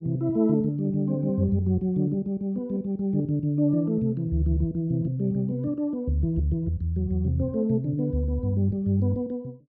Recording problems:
none

